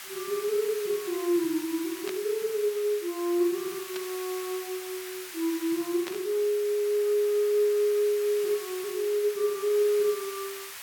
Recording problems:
hiss; SNR 12 dB
burst of static; at 2 s, at 4 s and at 6 s; peak -5 dB vs average level

